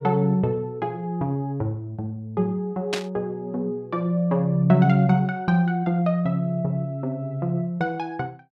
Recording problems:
static burst; at 3 s; peak +1 dB vs average level

